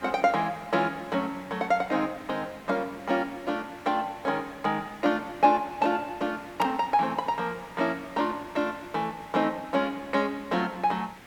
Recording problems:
hiss; SNR 19 dB

